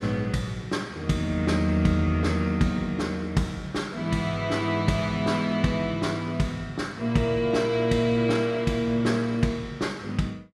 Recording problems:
none

